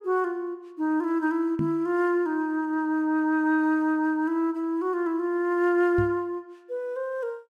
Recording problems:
microphone thump; at 1.5 s and at 6 s; peak 0 dB vs average level

